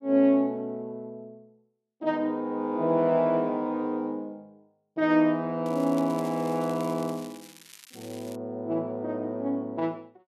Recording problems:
crackling; from 5.5 to 8.5 s; loose cable, SNR 21 dB

